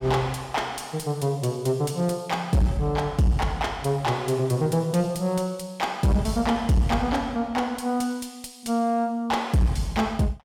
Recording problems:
distorted audio; soft clipping, signal-to-distortion ratio 10 dB

